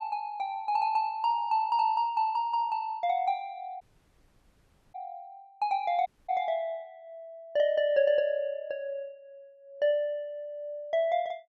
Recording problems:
dropout; at 4 s for 1 s and at 6 s

